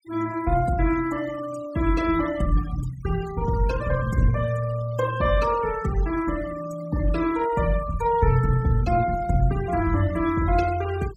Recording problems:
denoising artefacts; signal-to-artefact ratio 18 dB

